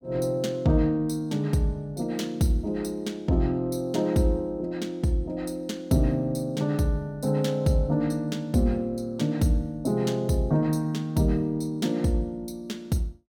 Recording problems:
none

